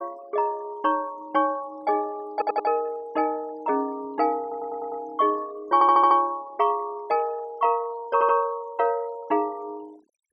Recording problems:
denoising artefacts; signal-to-artefact ratio 27 dB
stutter; 4 times, first at 2.5 s

